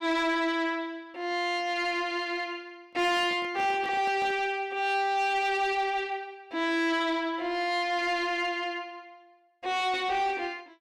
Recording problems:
distorted audio; soft clipping, signal-to-distortion ratio 11 dB
handling noise; from 3 to 4.5 s; peak -10 dB vs average level

